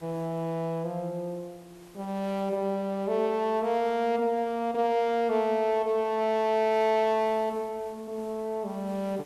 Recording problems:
hiss; slope -4 dB per octave, SNR 27 dB

